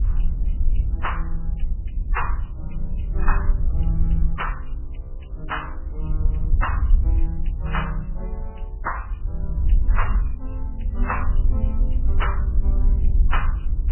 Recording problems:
codec artefacts; MP3, log-spectral distance 2 dB, nothing above 3 kHz
wind on the microphone; below 58 Hz, SNR -7 dB

